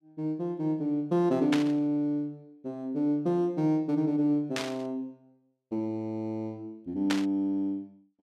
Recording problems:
static burst; at 1.5 s, at 4.5 s and at 7 s; peak +2 dB vs average level

